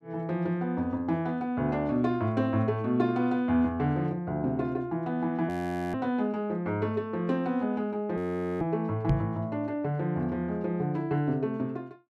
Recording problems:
audio freezing; at 5.5 s and at 8 s
microphone thump; at 9 s; peak +7 dB vs average level

